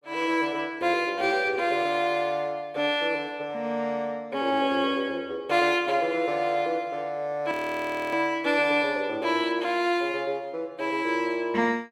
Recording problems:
frozen audio; at 7.5 s for 0.5 s

